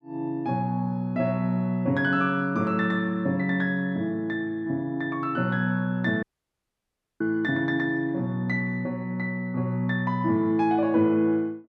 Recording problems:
dropout; at 6 s for 1 s

